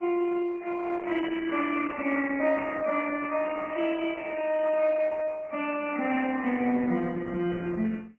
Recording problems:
lossy compression; MP3, then Opus, log-spectral distance 4 dB, nothing above 2.7 kHz

